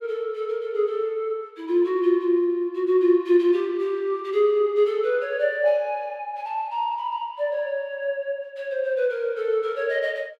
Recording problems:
none

